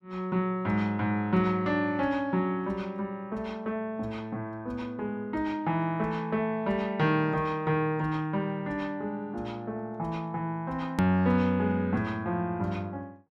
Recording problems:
hard cut with a click; at 11 s

